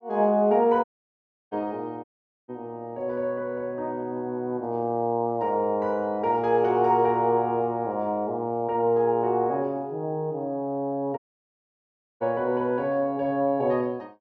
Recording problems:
dropout; at 1 s for 0.5 s, at 2 s and at 11 s for 1 s

